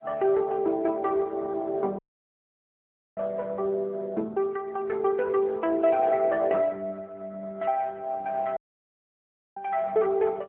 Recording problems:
phone line; 240 Hz to 3.3 kHz, AMR-NB
dropout; at 2 s for 1 s and at 8.5 s for 1 s

